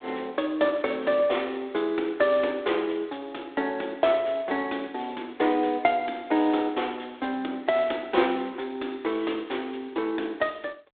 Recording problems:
telephone audio; 280 Hz to 3.7 kHz, G.726

